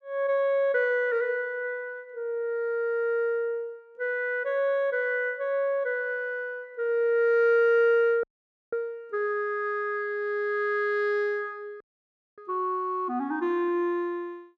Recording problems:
audio cutting out; at 8 s and at 12 s for 0.5 s

